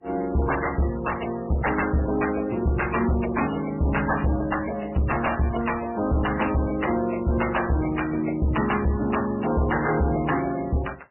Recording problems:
codec artefacts; MP3, then MP3, log-spectral distance 8 dB, nothing above 2.9 kHz
distortion; hard clipping, uneven, signal-to-distortion ratio 7 dB

